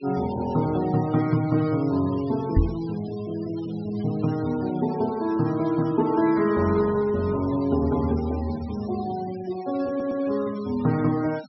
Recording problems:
treble cut off; nothing above 5.5 kHz
noise reduction artefacts; signal-to-artefact ratio 20 dB
knock on the microphone; at 2.5 s; peak +7 dB vs average level
audio stuttering; at 10 s

